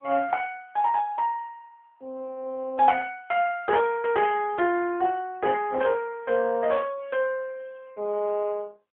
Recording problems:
phone line; 300 Hz to 3 kHz, AMR-NB

